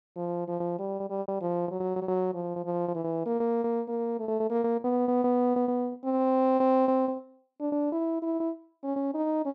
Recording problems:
lost packets; 14% of the sound replaced, filled with repeated pitch periods

